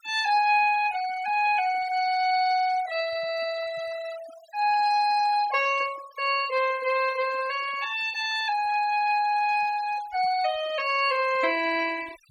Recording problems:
noise reduction artefacts; signal-to-artefact ratio 18 dB

